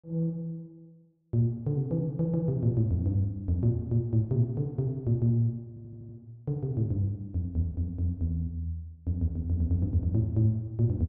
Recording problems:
audio stuttering; at 5.5 s

